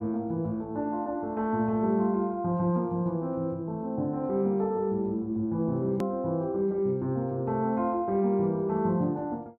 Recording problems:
click at an edit; at 6 s

